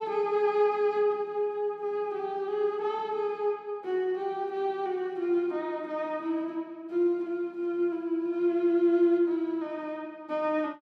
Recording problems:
none

